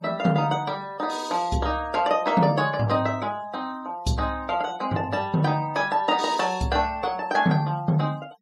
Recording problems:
denoising artefacts; signal-to-artefact ratio 23 dB

